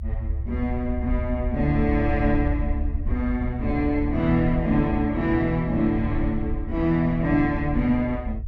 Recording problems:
rumble; below 72 Hz, SNR 6 dB

